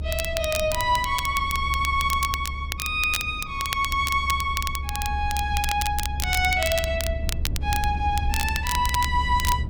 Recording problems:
low-frequency rumble; below 74 Hz, strongest tone 70 Hz, SNR 6 dB
crackle; vinyl, SNR 7 dB

